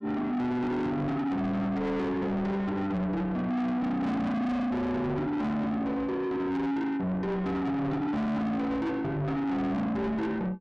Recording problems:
distortion; soft clipping, signal-to-distortion ratio 6 dB

